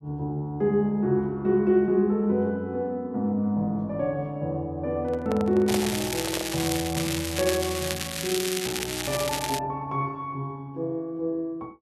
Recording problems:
handling noise; from 5 to 6.5 s; peak -2 dB vs average level
crackle; from 5.5 to 9.5 s; loose cable, SNR 4 dB

